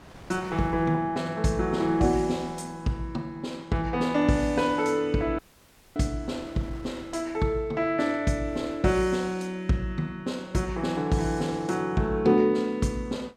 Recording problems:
wind on the microphone; below 1.2 kHz, SNR 23 dB
audio cutting out; at 5.5 s for 0.5 s

